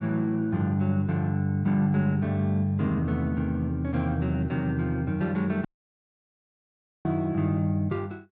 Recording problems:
dropout; at 5.5 s for 1.5 s

